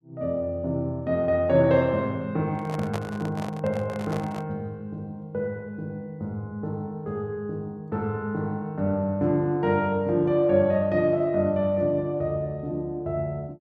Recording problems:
handling noise; from 2.5 to 4.5 s; peak -2 dB vs average level

